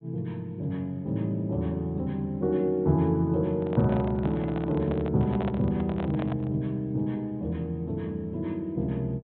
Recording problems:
treble missing; nothing above 4 kHz
microphone handling noise; from 3.5 to 6.5 s; peak -4 dB vs average level

